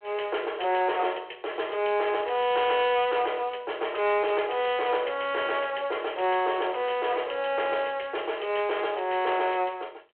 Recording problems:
telephone audio; 320 Hz to 3.3 kHz, G.726
distortion; soft clipping, signal-to-distortion ratio 11 dB

